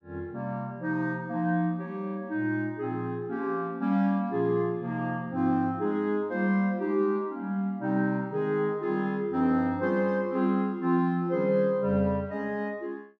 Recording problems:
none

